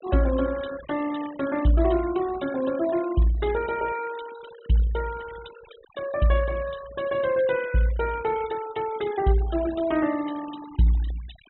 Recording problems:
treble missing; nothing above 3.9 kHz
noise reduction artefacts; signal-to-artefact ratio 18 dB

